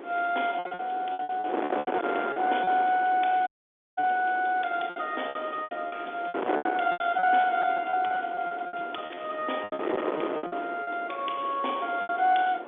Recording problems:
telephone audio; 300 Hz to 3.6 kHz, G.711
distortion; soft clipping, signal-to-distortion ratio 9 dB
wind on the microphone; below 870 Hz, SNR 8 dB
packet loss; 15% of the sound replaced, filled with repeated pitch periods
dropout; at 3.5 s for 0.5 s

